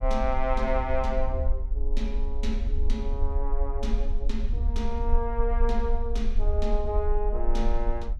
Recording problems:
rumble; below 42 Hz, strongest tone 20 Hz, SNR -1 dB

